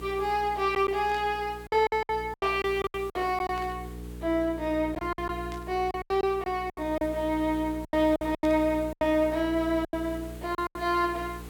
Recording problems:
hum; 60 Hz, harmonics up to 480 Hz, SNR 14 dB
background hiss; slope -3 dB per octave, SNR 23 dB
lost packets; 11% of the sound replaced, filled with silence
burst of static; 4 times, first at 1 s; peak -14 dB vs average level

